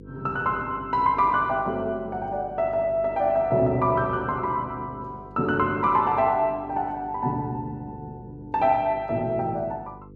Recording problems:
hum; 50 Hz, harmonics up to 500 Hz, SNR 20 dB

